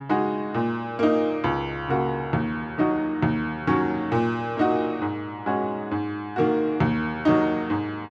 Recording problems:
none

